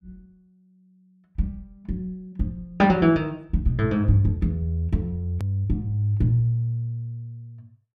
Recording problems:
edit click; at 5.5 s

